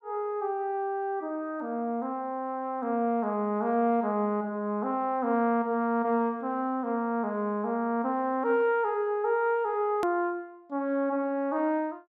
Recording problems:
hard cut with a click; at 10 s

